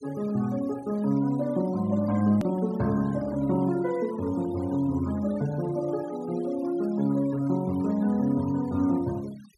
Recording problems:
denoising artefacts; signal-to-artefact ratio 21 dB
hard cut with a click; at 2.5 s

